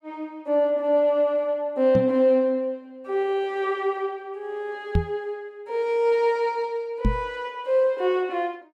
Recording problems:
microphone bump; at 2 s, at 5 s and at 7 s; peak +5 dB vs average level

